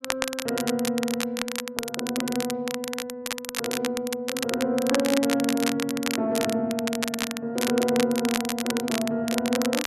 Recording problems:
crackling; vinyl, SNR 4 dB

